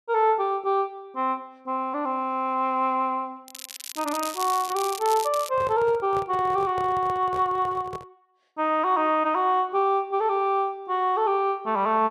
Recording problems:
crackle; from 3.5 to 5.5 s; loose cable, SNR 11 dB
microphone handling noise; from 5.5 to 8 s; peak -9 dB vs average level

